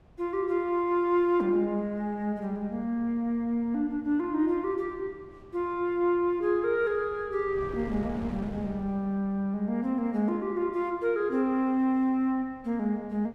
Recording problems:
wind noise; below 390 Hz, SNR 20 dB

